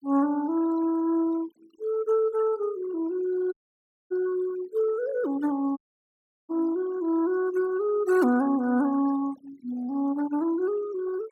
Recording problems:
noise reduction artefacts; signal-to-artefact ratio 21 dB
audio cutting out; at 3.5 s for 0.5 s and at 6 s for 0.5 s

